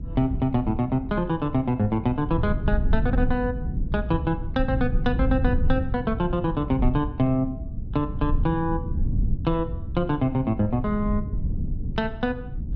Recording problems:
treble missing; nothing above 8 kHz
rumble; below 110 Hz, SNR 4 dB

